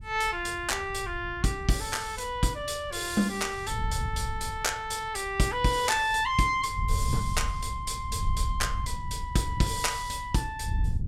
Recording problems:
wind noise; below 90 Hz, SNR 8 dB

